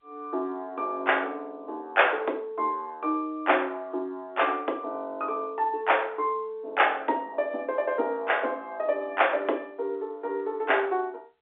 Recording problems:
telephone audio; 260 Hz to 3.7 kHz, G.711

